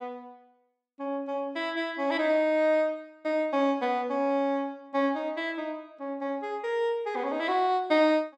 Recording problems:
none

